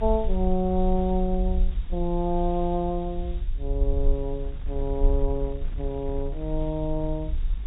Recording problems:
low-pass filter; nothing above 4 kHz
background hiss; SNR 27 dB
low-frequency rumble; below 48 Hz, strongest tone 28 Hz, SNR 3 dB
wind noise; below 160 Hz, SNR 17 dB

